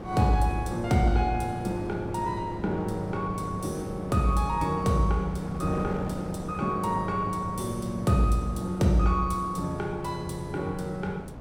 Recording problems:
wind on the microphone; below 460 Hz, SNR 10 dB

